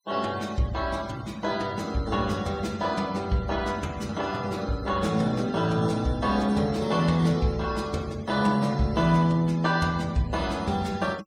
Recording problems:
denoising artefacts; signal-to-artefact ratio 22 dB

